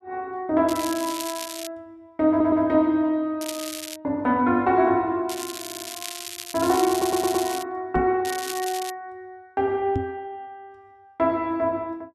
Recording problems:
crackle; 4 times, first at 0.5 s; loose cable, SNR 10 dB
stutter; at 2.5 s, at 5.5 s and at 7 s
microphone thump; at 8 s and at 10 s; peak 0 dB vs average level

